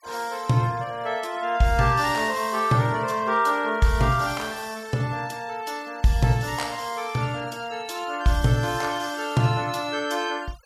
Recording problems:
denoising artefacts; signal-to-artefact ratio 23 dB

